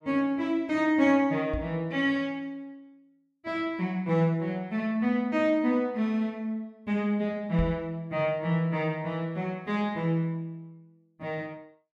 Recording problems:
knock on the microphone; at 1.5 s and at 7.5 s; peak 0 dB vs average level

